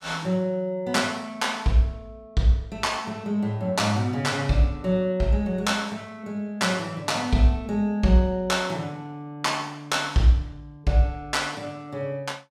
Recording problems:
none

